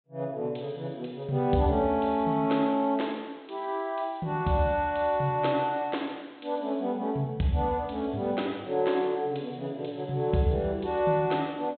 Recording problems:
low-pass filter; nothing above 4 kHz

